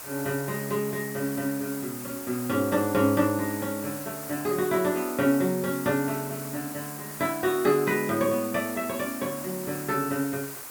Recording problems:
background hiss; SNR 9 dB

